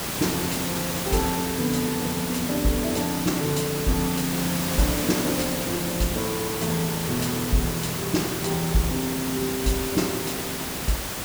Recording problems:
hiss; slope -3 dB per octave, SNR 1 dB

